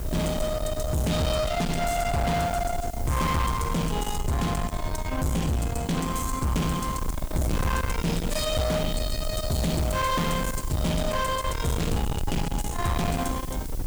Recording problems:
distorted audio; soft clipping, signal-to-distortion ratio 6 dB
hiss; slope +3 dB per octave, SNR 18 dB
wind noise; below 470 Hz, SNR 5 dB

